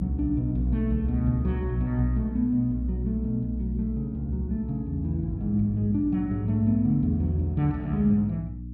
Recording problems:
electrical hum; 60 Hz, harmonics up to 300 Hz, SNR 11 dB

